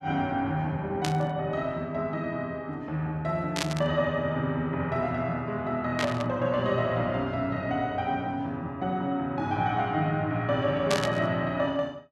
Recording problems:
burst of static; 4 times, first at 1 s; peak +4 dB vs average level

